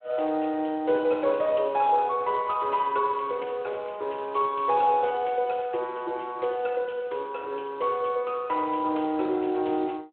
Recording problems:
telephone audio; 280 Hz to 3.6 kHz, Speex

